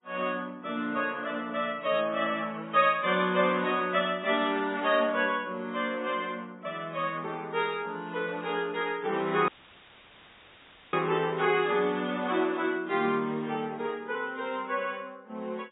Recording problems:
treble cut off; nothing above 3.8 kHz
lossy compression; MP3, log-spectral distance 2 dB
dropout; at 9.5 s for 1.5 s; filled with static

